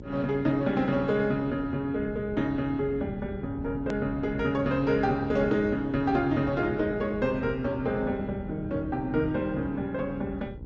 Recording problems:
low-pass filter; nothing above 7.3 kHz
lossy codec; Opus, log-spectral distance 2 dB
electrical hum; 60 Hz, harmonics up to 1 kHz, SNR 18 dB
low-frequency rumble; below 160 Hz, SNR 14 dB
hard cut with a click; at 4 s

